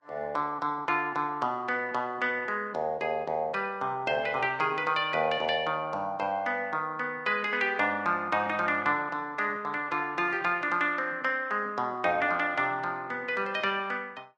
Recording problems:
lossy codec; Vorbis, log-spectral distance 2 dB

